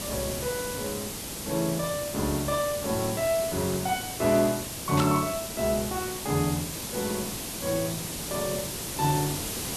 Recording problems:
background hiss; SNR 4 dB
burst of static; at 5 s; peak +1 dB vs average level

